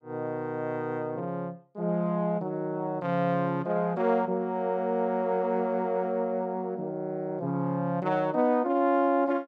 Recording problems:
none

